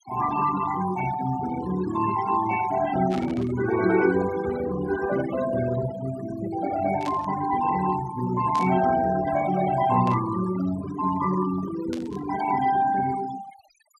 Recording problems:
denoising artefacts; signal-to-artefact ratio 12 dB
burst of static; 5 times, first at 3 s; peak -10 dB vs average level

